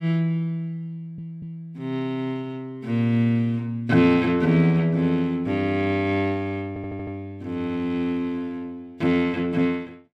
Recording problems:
stutter; at 1 s and at 6.5 s

